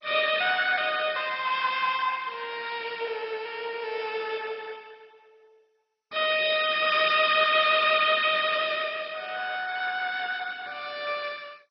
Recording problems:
lossy compression; MP2, then MP2, log-spectral distance 6 dB, nothing above 5.2 kHz

